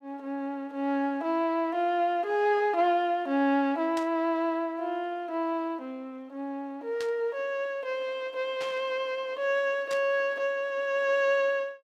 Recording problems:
static burst; 4 times, first at 4 s; peak -7 dB vs average level

